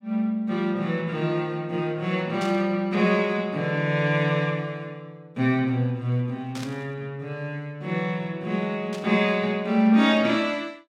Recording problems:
burst of static; at 2.5 s, at 6.5 s and at 9 s; peak -9 dB vs average level

